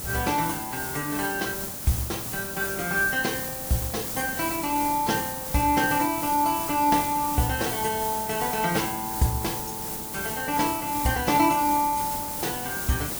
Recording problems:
lossy codec; AAC, log-spectral distance 2 dB
background hiss; SNR 4 dB

